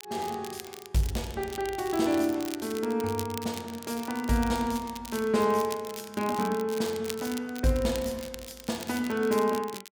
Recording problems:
crackle; vinyl, SNR 13 dB

